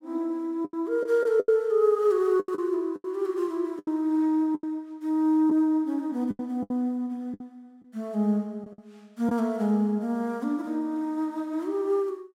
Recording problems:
lost packets; 7% of the sound replaced, filled with the last packet

